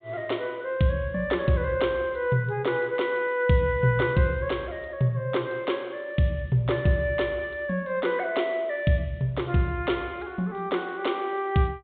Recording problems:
treble cut off; nothing above 4 kHz

